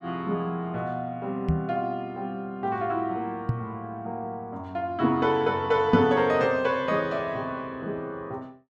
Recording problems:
microphone bump; at 1.5 s, at 3.5 s and at 6 s; peak +6 dB vs average level

